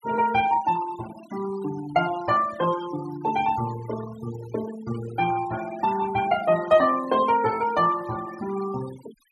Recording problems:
denoising artefacts; signal-to-artefact ratio 16 dB

